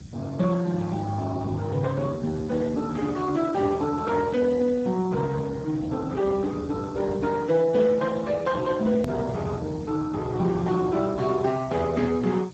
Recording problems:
codec artefacts; Speex, log-spectral distance 4 dB, nothing above 13.1 kHz
background hiss; SNR 28 dB
rumble; below 230 Hz, SNR 16 dB
click at an edit; at 9 s

